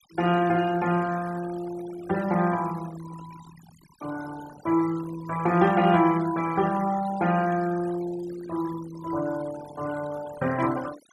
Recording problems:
denoising artefacts; signal-to-artefact ratio 16 dB

